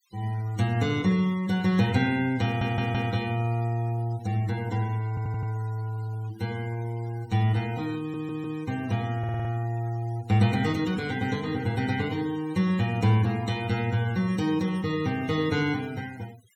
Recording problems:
denoising artefacts; signal-to-artefact ratio 21 dB
stutter; 4 times, first at 2.5 s

